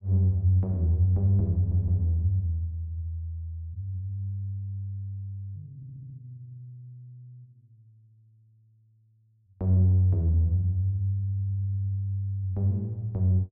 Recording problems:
audio stuttering; at 1.5 s, at 6 s and at 11 s

